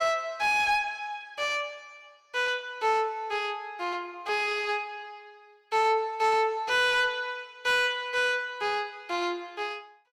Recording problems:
distorted audio; soft clipping, signal-to-distortion ratio 10 dB

